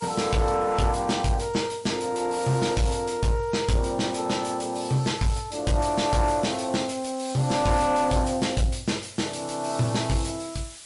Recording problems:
lossy codec; MP3, log-spectral distance 8 dB, nothing above 10.7 kHz
distortion; soft clipping, signal-to-distortion ratio 11 dB
hiss; slope +2 dB per octave, SNR 19 dB

